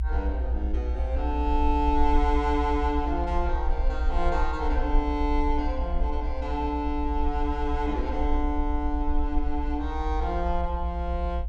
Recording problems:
low-frequency rumble; below 60 Hz, SNR 1 dB

